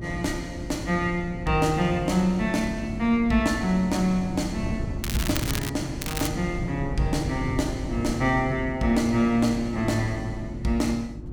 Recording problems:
hum; 50 Hz, harmonics up to 350 Hz, SNR 13 dB
wind noise; below 200 Hz, SNR 10 dB
crackle; at 5 s and at 6 s; loose cable, SNR 7 dB

